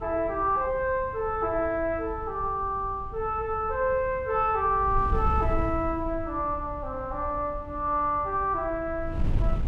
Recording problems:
wind noise; below 88 Hz, SNR 10 dB

